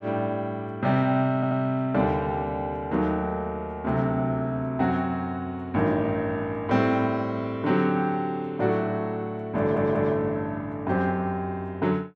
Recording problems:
stutter; at 1.5 s and at 9.5 s

